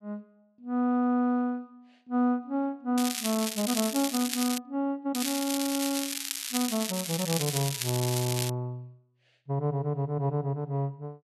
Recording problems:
crackling; from 3 to 4.5 s and from 5 to 8.5 s; loose cable, SNR 3 dB

